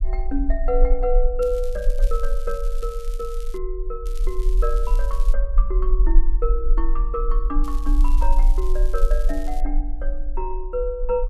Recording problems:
rumble; below 38 Hz, SNR -4 dB
crackle; from 1.5 to 3.5 s, from 4 to 5.5 s and from 7.5 to 9.5 s; loose cable, SNR 18 dB

